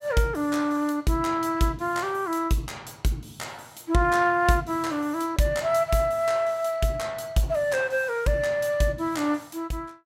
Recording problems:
none

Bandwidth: 16 kHz